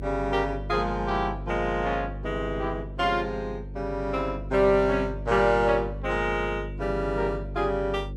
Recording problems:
hum; 50 Hz, harmonics up to 550 Hz, SNR 10 dB

